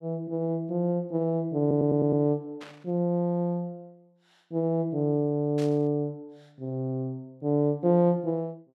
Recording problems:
stutter; at 1.5 s
static burst; at 2.5 s and at 5.5 s; peak -13 dB vs average level

